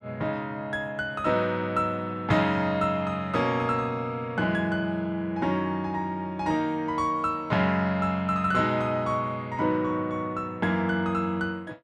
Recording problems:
none

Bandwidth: 13 kHz